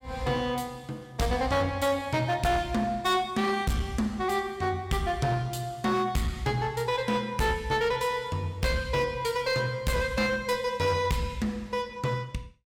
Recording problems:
distorted audio; hard clipping, uneven, signal-to-distortion ratio 10 dB

